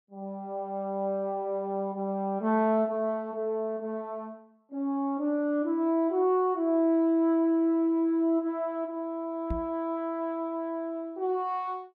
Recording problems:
knock on the microphone; at 9.5 s; peak -2 dB vs average level

